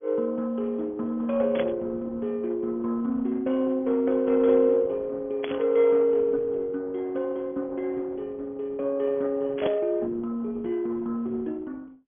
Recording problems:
low-pass filter; nothing above 3.4 kHz
codec artefacts; Opus, log-spectral distance 3 dB
static burst; at 1.5 s, at 5.5 s and at 9.5 s; peak -3 dB vs average level

